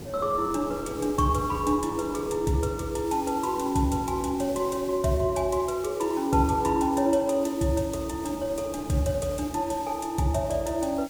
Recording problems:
hiss; SNR 20 dB
wind noise; below 430 Hz, SNR 18 dB

